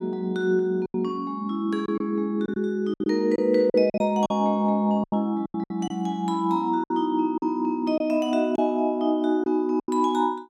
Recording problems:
packet loss; 8% of the sound replaced, filled with silence

